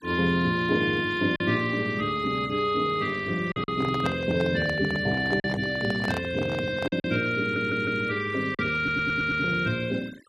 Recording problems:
denoising artefacts; signal-to-artefact ratio 21 dB
lost packets; 3% of the sound replaced, filled with silence
microphone handling noise; from 3.5 to 7 s; peak -2 dB vs average level
audio stuttering; at 7.5 s and at 9 s

